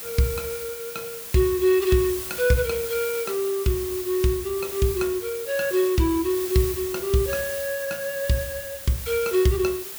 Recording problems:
background hiss; slope 0 dB per octave, SNR 8 dB

